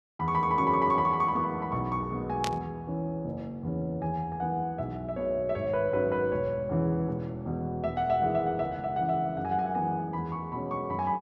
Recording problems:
static burst; at 2.5 s; peak 0 dB vs average level

